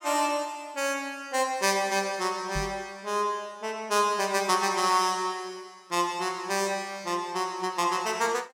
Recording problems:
microphone thump; at 2.5 s; peak -3 dB vs average level

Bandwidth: 17 kHz